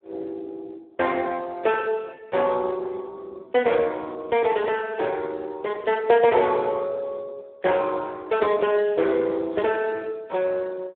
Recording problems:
telephone audio; 320 Hz to 3.4 kHz, Speex

